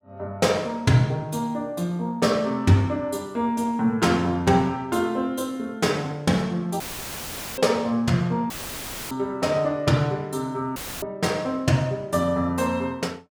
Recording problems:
dropout; at 7 s for 1 s, at 8.5 s for 0.5 s and at 11 s; filled with static

